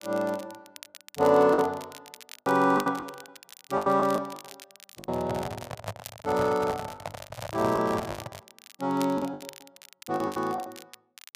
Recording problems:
crackle; vinyl, SNR 20 dB
packet loss; 14% of the sound replaced, filled with the last packet
microphone handling noise; from 5 to 8.5 s; peak -3 dB vs average level

